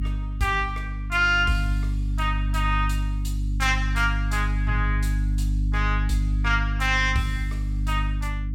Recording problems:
hum; 50 Hz, harmonics up to 300 Hz, SNR 1 dB

